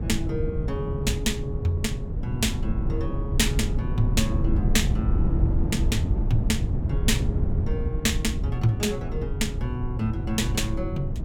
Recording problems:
low-frequency rumble; below 130 Hz, SNR -1 dB

